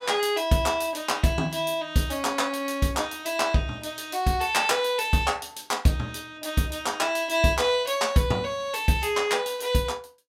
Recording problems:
none

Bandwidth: 16 kHz